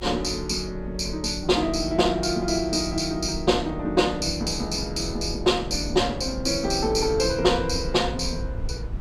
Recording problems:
low-frequency rumble; below 86 Hz, SNR 12 dB

